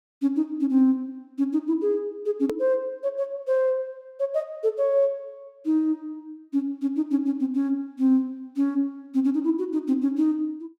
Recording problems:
click at an edit; at 2.5 s

